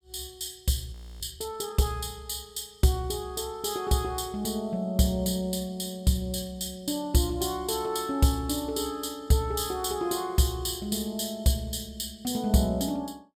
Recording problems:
frozen audio; at 1 s

